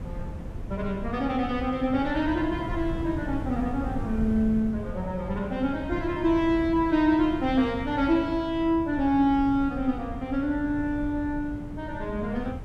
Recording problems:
wind noise; below 170 Hz, SNR 10 dB

